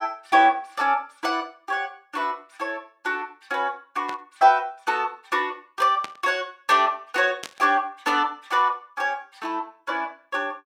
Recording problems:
static burst; at 4 s, at 6 s and at 7.5 s; peak -6 dB vs average level

